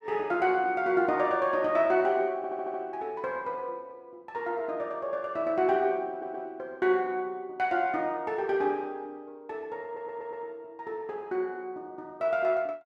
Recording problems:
stutter; at 2.5 s, at 6 s and at 10 s

